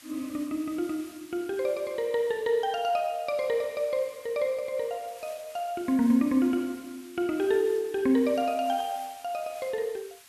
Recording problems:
background hiss; SNR 21 dB

